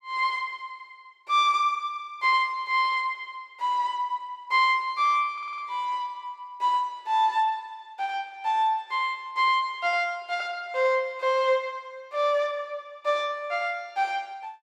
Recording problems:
audio stuttering; at 5.5 s

